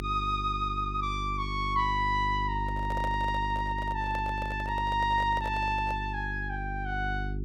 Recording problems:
electrical hum; 50 Hz, harmonics up to 400 Hz, SNR 7 dB
handling noise; from 2.5 to 6 s; peak -5 dB vs average level

